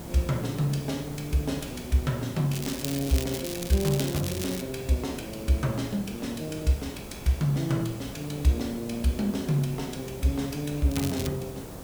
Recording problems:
hum; 60 Hz, harmonics up to 480 Hz, SNR 25 dB
background hiss; SNR 11 dB
crackling; from 2.5 to 4.5 s and at 11 s; loose cable, SNR 8 dB

